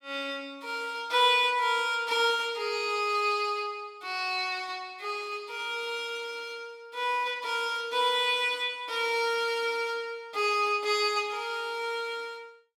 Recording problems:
none

